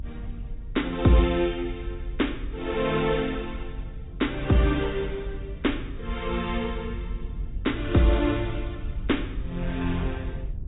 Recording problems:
treble missing; nothing above 4 kHz
rumble; below 74 Hz, SNR 10 dB

